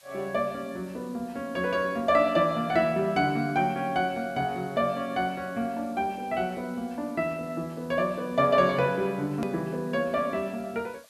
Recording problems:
background hiss; slope +2 dB per octave, SNR 27 dB
hard cut with a click; at 9.5 s

